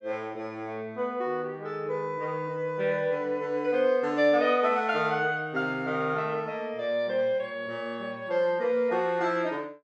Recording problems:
none

